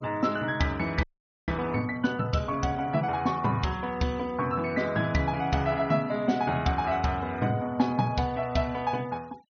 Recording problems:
treble missing; nothing above 6.4 kHz
denoising artefacts; signal-to-artefact ratio 24 dB
frozen audio; at 1 s

